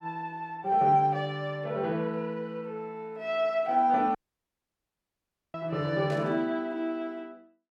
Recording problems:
audio cutting out; at 4 s for 1.5 s
burst of static; at 6 s; peak -15 dB vs average level

